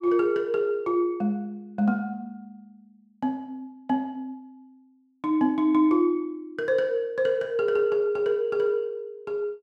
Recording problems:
none

